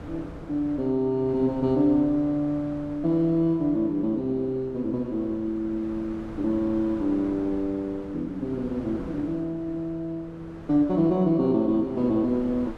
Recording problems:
wind noise; below 580 Hz, SNR 17 dB

